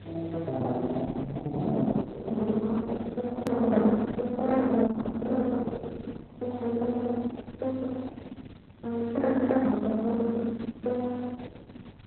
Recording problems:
lossy codec; Opus, then Opus, log-spectral distance 4 dB, nothing above 13.1 kHz
electrical hum; 50 Hz, harmonics up to 300 Hz, SNR 19 dB
background hiss; SNR 29 dB
hard cut with a click; at 3.5 s

